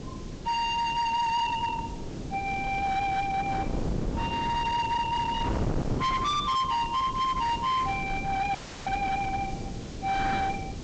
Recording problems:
low-pass filter; nothing above 8 kHz
distortion; hard clipping, signal-to-distortion ratio 10 dB
background hiss; slope +1 dB per octave, SNR 21 dB
wind noise; below 390 Hz, SNR 7 dB
audio cutting out; at 8.5 s

